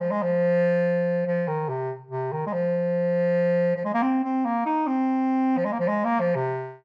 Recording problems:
none

